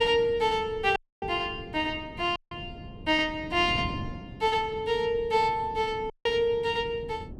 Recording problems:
wind noise; below 280 Hz, SNR 15 dB
dropout; at 1 s, at 2.5 s and at 6 s

